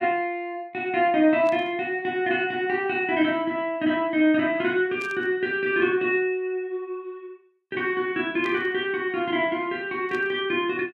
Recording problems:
burst of static; 4 times, first at 1.5 s; peak -12 dB vs average level

